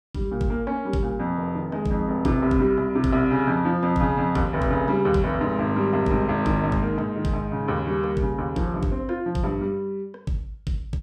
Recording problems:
none

